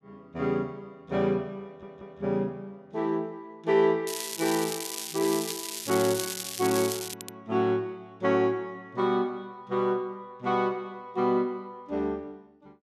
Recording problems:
stutter; at 1.5 s and at 7 s
crackle; from 4 to 7.5 s; loose cable, SNR 5 dB

